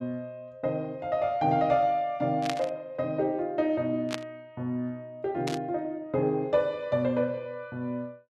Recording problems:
burst of static; at 2.5 s, at 4 s and at 5.5 s; peak 0 dB vs average level

